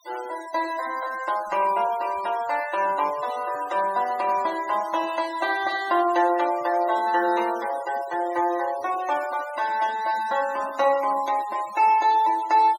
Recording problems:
noise reduction artefacts; signal-to-artefact ratio 18 dB

